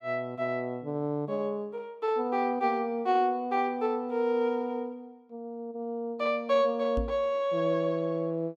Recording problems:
microphone thump; at 7 s; peak 0 dB vs average level

